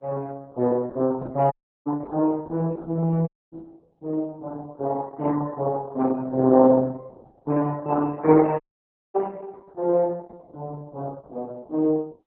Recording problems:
lossy compression; MP3, then Opus, log-spectral distance 2 dB
dropout; at 1.5 s, at 3.5 s and at 8.5 s for 0.5 s

